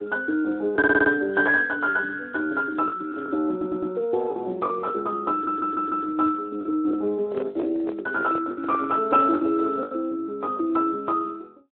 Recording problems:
telephone audio; 280 Hz to 3.1 kHz, Speex
lost packets; 6% of the sound replaced, filled with the last packet
audio stuttering; at 1 s, at 3.5 s and at 5.5 s
handling noise; from 7.5 to 9.5 s; peak -7 dB vs average level

